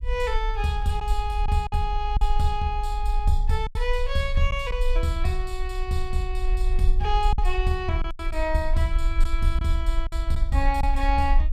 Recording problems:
low-frequency rumble; below 48 Hz, SNR 0 dB
lost packets; 4% of the sound replaced, filled with silence

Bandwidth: 15 kHz